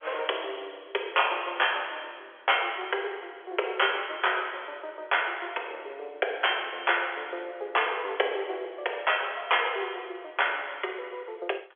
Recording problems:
phone line; 340 Hz to 3.4 kHz, G.711

